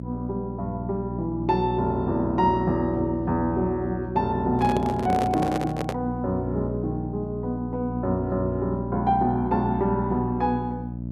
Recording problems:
electrical hum; 60 Hz, harmonics up to 600 Hz, SNR 5 dB
microphone handling noise; from 4.5 to 6 s; peak 0 dB vs average level

